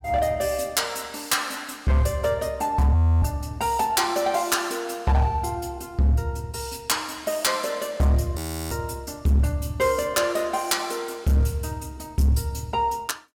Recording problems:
distortion; hard clipping, signal-to-distortion ratio 10 dB
audio freezing; at 3 s and at 8.5 s

